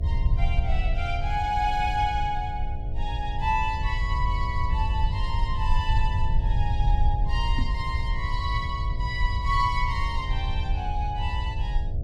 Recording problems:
hum; 60 Hz, harmonics up to 720 Hz, SNR 12 dB
rumble; below 72 Hz, SNR -1 dB
microphone bump; at 7.5 s; peak 0 dB vs average level

